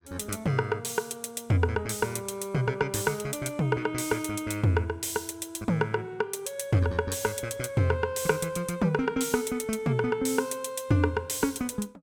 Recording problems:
none

